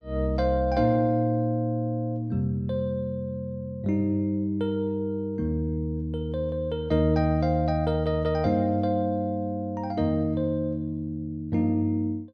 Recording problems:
none

